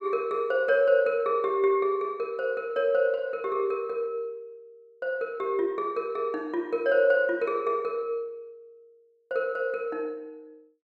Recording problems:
none

